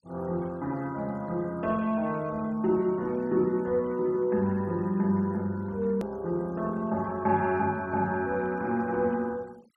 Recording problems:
noise reduction artefacts; signal-to-artefact ratio 26 dB
hard cut with a click; at 6 s

